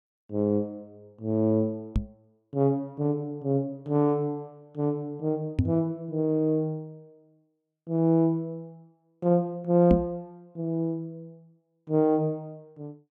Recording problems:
microphone bump; at 2 s, at 5.5 s and at 10 s; peak +7 dB vs average level

